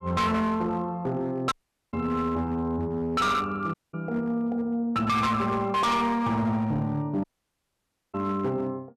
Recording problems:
distorted audio; hard clipping, signal-to-distortion ratio 8 dB
audio cutting out; at 1.5 s, at 3.5 s and at 7 s for 1 s

